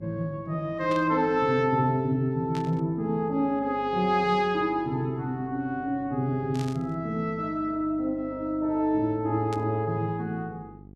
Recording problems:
hum; 50 Hz, harmonics up to 750 Hz, SNR 23 dB
static burst; 4 times, first at 1 s; peak -10 dB vs average level

